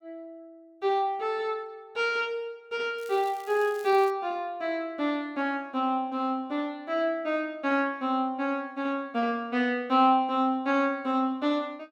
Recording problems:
crackle; from 3 to 4 s; loose cable, SNR 23 dB

